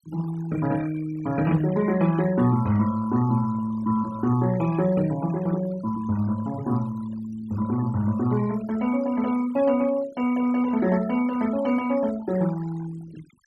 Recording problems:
denoising artefacts; signal-to-artefact ratio 17 dB

